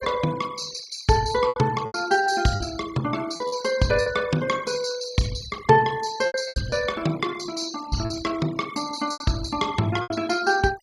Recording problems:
noise reduction artefacts; signal-to-artefact ratio 16 dB
lost packets; 7% of the sound replaced, filled with repeated pitch periods

